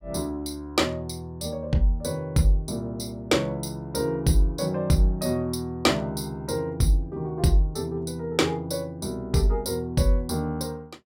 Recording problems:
none

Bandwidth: 16 kHz